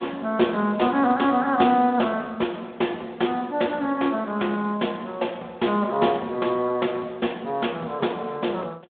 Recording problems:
telephone audio; 170 Hz to 3.6 kHz, Speex

